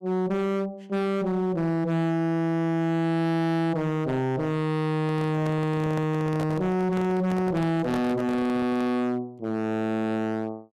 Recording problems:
distortion; hard clipping, signal-to-distortion ratio 6 dB
handling noise; from 5 to 9 s; peak -4 dB vs average level

